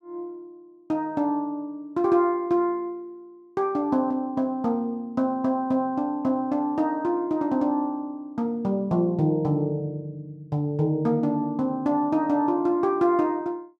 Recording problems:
none

